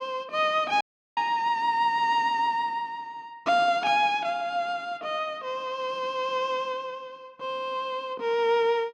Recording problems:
audio cutting out; at 1 s

